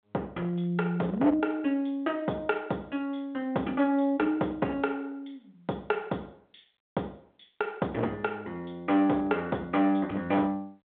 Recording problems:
phone line; 280 Hz to 3.6 kHz, G.726
distortion; hard clipping, signal-to-distortion ratio 14 dB

